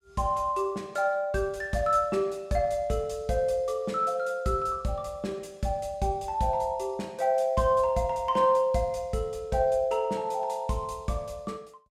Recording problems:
none

